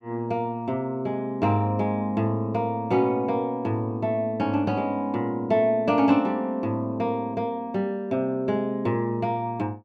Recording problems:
none

